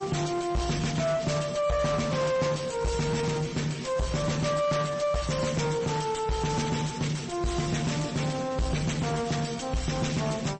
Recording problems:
codec artefacts; MP3, then MP3, log-spectral distance 5 dB, nothing above 8.2 kHz
distortion; soft clipping, signal-to-distortion ratio 5 dB

